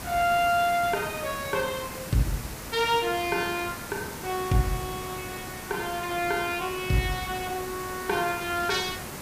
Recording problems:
background hiss; slope -4 dB per octave, SNR 9 dB

